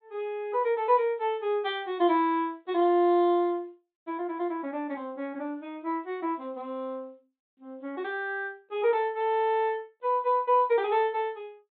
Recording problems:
treble cut off; nothing above 4 kHz

